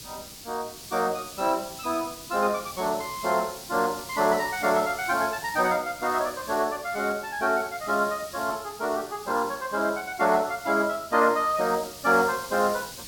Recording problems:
background hiss; SNR 14 dB

